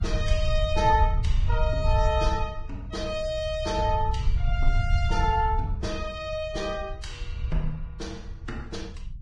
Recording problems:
lossy codec; Vorbis, log-spectral distance 2 dB, nothing above 10.1 kHz
rumble; below 84 Hz, SNR 0 dB

